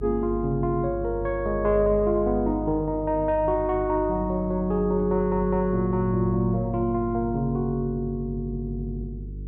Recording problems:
hum; 50 Hz, harmonics up to 450 Hz, SNR 11 dB

